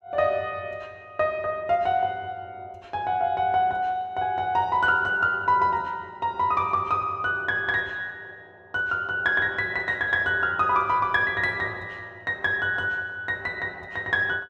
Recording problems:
none

